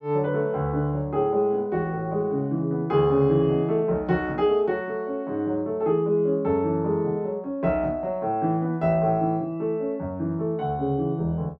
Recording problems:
none

